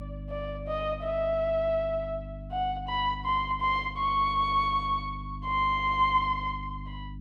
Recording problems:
hum; 50 Hz, harmonics up to 300 Hz, SNR 12 dB

